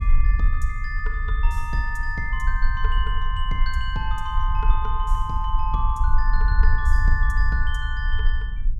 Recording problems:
rumble; below 50 Hz, SNR -4 dB

